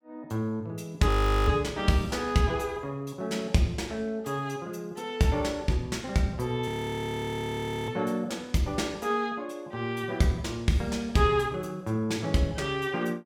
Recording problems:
frozen audio; at 1 s and at 6.5 s for 1 s

